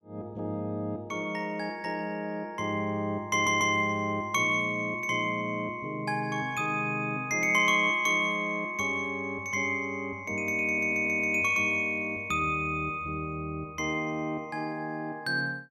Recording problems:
stutter; at 3.5 s and at 11 s

